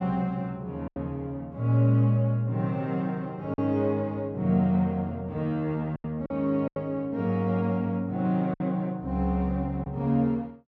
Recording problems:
lost packets; 4% of the sound replaced, filled with silence

